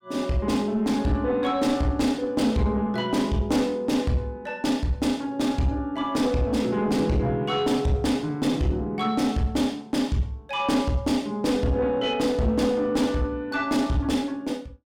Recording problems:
distortion; soft clipping, signal-to-distortion ratio 10 dB

